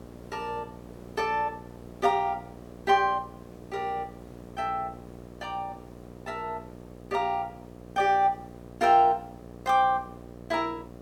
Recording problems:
hum; 60 Hz, harmonics up to 1.3 kHz, SNR 18 dB
background hiss; slope -8 dB per octave, SNR 25 dB

